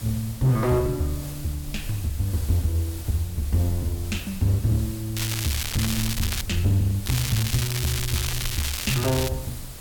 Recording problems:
distorted audio; hard clipping, uneven, signal-to-distortion ratio 10 dB
hum; 60 Hz, harmonics up to 660 Hz, SNR 27 dB
hiss; slope -2 dB per octave, SNR 14 dB
low-frequency rumble; below 72 Hz, SNR 14 dB
crackling; from 5 to 6.5 s and from 7 to 9.5 s; loose cable, SNR 3 dB

